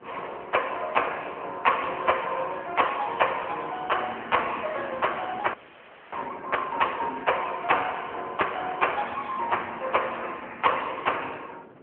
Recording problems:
phone line; 300 Hz to 3.2 kHz, AMR-NB
wind noise; below 750 Hz, SNR 21 dB
audio freezing; at 5.5 s for 0.5 s

